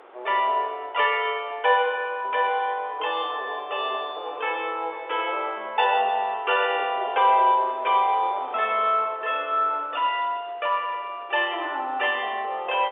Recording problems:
telephone audio; 320 Hz to 3.7 kHz, G.711
wind noise; below 1.4 kHz, SNR 23 dB

